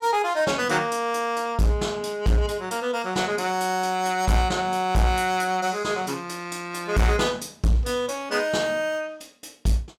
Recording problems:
distortion; hard clipping, signal-to-distortion ratio 11 dB

